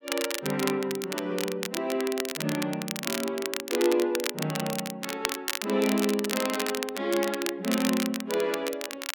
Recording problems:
crackle; vinyl, SNR 4 dB

